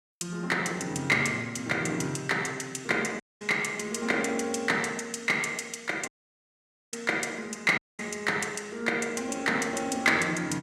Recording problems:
dropout; at 3 s, at 6 s for 1 s and at 8 s

